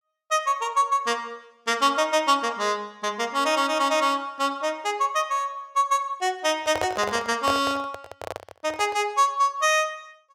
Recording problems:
microphone handling noise; from 6.5 to 9 s; peak 0 dB vs average level

